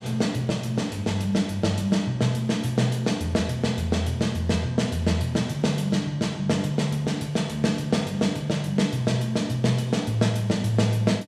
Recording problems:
none

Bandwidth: 14.5 kHz